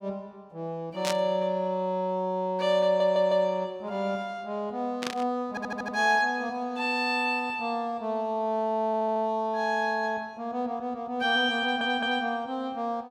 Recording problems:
burst of static; at 1 s and at 5 s; peak 0 dB vs average level
stutter; 4 times, first at 3 s

